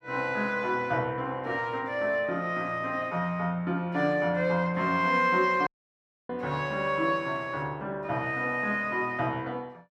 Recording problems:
audio cutting out; at 5.5 s for 0.5 s

